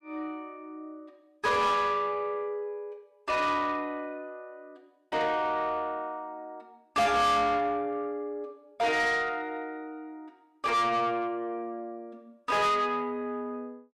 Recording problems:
distorted audio; soft clipping, signal-to-distortion ratio 7 dB

